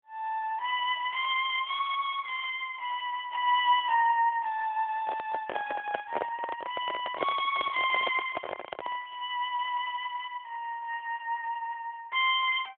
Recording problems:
phone line; 450 Hz to 3.5 kHz, AMR-NB
microphone handling noise; from 5 to 9 s; peak +2 dB vs average level

